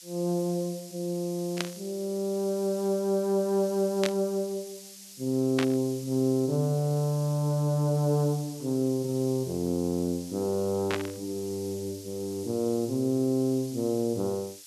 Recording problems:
hiss; SNR 16 dB
burst of static; 4 times, first at 1.5 s; peak +2 dB vs average level

